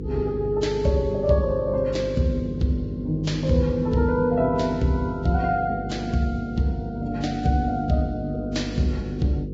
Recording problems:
codec artefacts; Vorbis, log-spectral distance 2 dB, nothing above 7.3 kHz
electrical hum; 50 Hz, harmonics up to 500 Hz, SNR 9 dB

